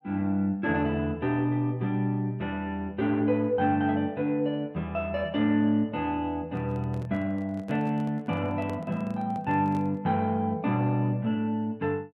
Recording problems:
microphone handling noise; from 6.5 to 10 s; peak -9 dB vs average level

